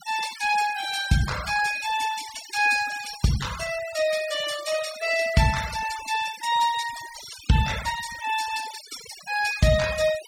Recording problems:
denoising artefacts; signal-to-artefact ratio 12 dB

